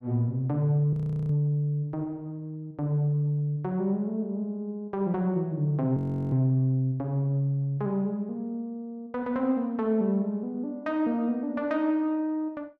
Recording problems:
audio freezing; at 1 s and at 6 s

